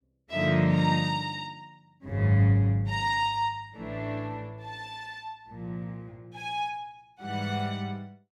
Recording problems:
none

